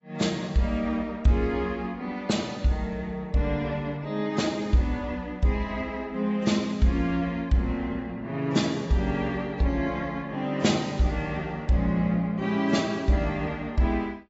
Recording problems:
lossy compression; AAC, log-spectral distance 2 dB, nothing above 7.6 kHz

